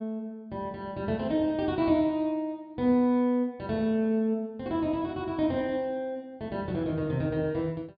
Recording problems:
low-pass filter; nothing above 4.8 kHz

